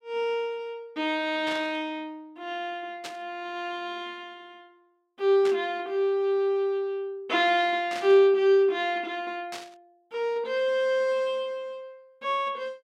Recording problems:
static burst; 5 times, first at 1.5 s; peak -7 dB vs average level

